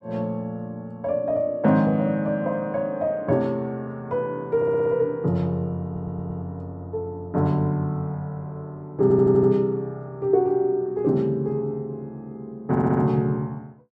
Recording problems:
audio stuttering; 4 times, first at 4.5 s

